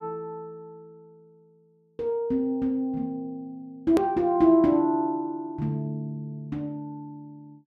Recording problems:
click at an edit; at 4 s

